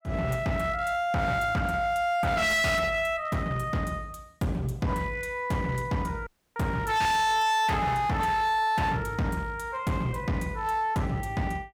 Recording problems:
distorted audio; hard clipping, uneven, signal-to-distortion ratio 6 dB
dropout; at 6.5 s

